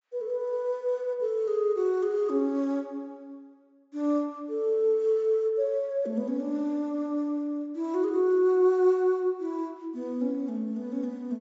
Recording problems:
treble cut off; nothing above 8 kHz

